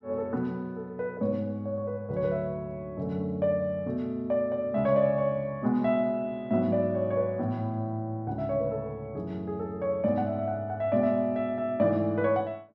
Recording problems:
none

